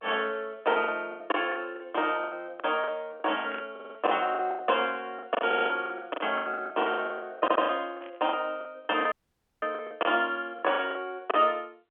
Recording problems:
phone line; 220 Hz to 3.3 kHz, G.711
packet loss; 18% of the sound replaced, filled with the last packet
burst of static; at 3.5 s and at 8 s; peak -10 dB vs average level
audio stuttering; at 4 s, at 5.5 s and at 7.5 s
audio cutting out; at 9 s for 0.5 s

